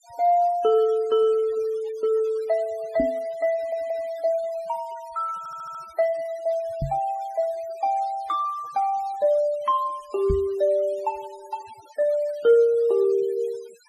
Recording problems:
denoising artefacts; signal-to-artefact ratio 25 dB
knock on the microphone; at 3 s, at 7 s and at 10 s; peak +1 dB vs average level
audio stuttering; at 3.5 s and at 5.5 s

